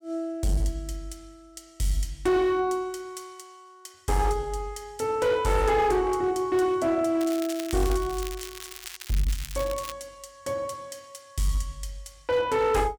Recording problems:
distorted audio; hard clipping, signal-to-distortion ratio 11 dB
crackling; from 7 to 10 s; loose cable, SNR 12 dB

